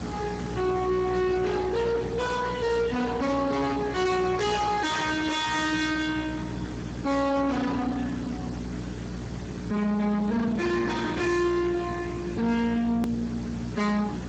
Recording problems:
codec artefacts; Speex, log-spectral distance 5 dB, nothing above 7.3 kHz
distorted audio; soft clipping, signal-to-distortion ratio 6 dB
hum; 60 Hz, harmonics up to 420 Hz, SNR 10 dB
background hiss; slope -5 dB per octave, SNR 13 dB
click at an edit; at 13 s

